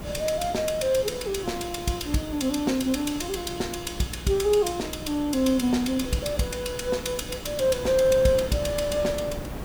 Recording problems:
hum; 60 Hz, harmonics up to 360 Hz, SNR 20 dB
background hiss; slope -3 dB per octave, SNR 21 dB
wind on the microphone; below 520 Hz, SNR 14 dB

